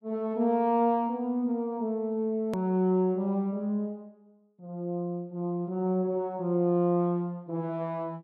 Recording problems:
edit click; at 2.5 s

